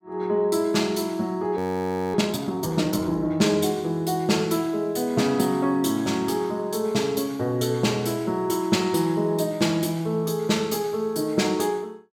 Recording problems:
frozen audio; at 1.5 s for 0.5 s

